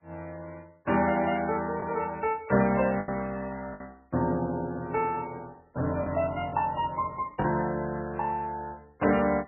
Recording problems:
codec artefacts; MP3, log-spectral distance 3 dB, nothing above 2.7 kHz
lost packets; 3% of the sound replaced, filled with the last packet

